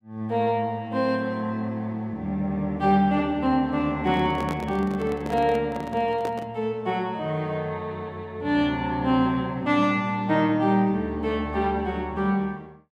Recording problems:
handling noise; from 4 to 6.5 s; peak -4 dB vs average level

